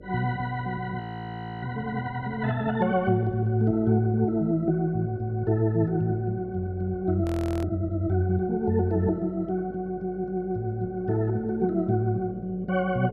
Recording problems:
hum; 50 Hz, harmonics up to 600 Hz, SNR 20 dB
audio freezing; at 1 s for 0.5 s and at 7.5 s

